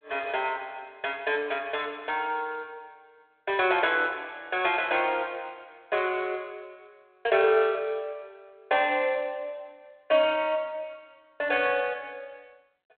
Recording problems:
telephone audio; 340 Hz to 3.5 kHz, G.726

